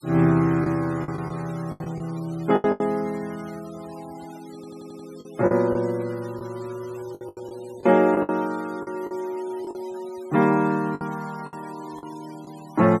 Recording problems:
noise reduction artefacts; signal-to-artefact ratio 23 dB
packet loss; 9% of the sound replaced, filled with the last packet
audio stuttering; at 4.5 s

